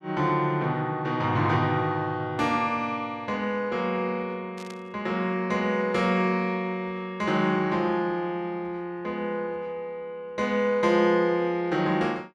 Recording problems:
burst of static; at 4.5 s; peak -14 dB vs average level

